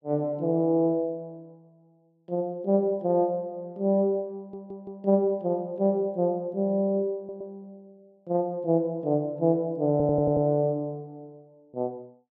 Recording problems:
audio stuttering; at 4.5 s, at 7 s and at 10 s

